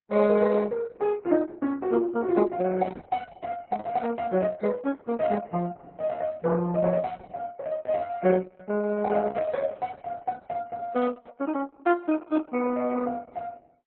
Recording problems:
lossy codec; MP3, then Opus, log-spectral distance 3 dB, nothing above 4 kHz

